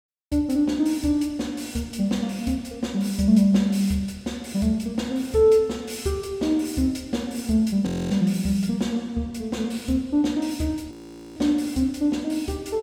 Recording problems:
audio freezing; at 8 s and at 11 s

